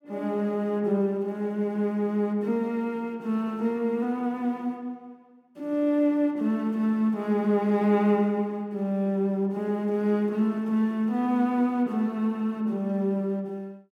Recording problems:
none

